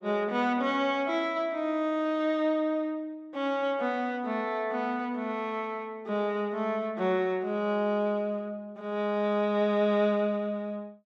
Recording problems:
none

